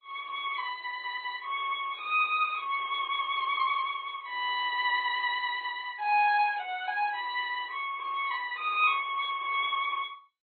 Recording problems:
lossy compression; MP3, then MP2, log-spectral distance 4 dB, nothing above 4 kHz

